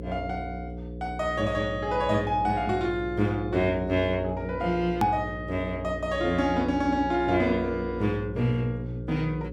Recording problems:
hum; 60 Hz, harmonics up to 540 Hz, SNR 10 dB
edit click; at 5 s

